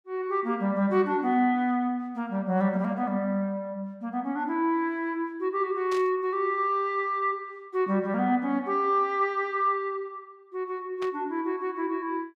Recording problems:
burst of static; at 6 s and at 11 s; peak -9 dB vs average level

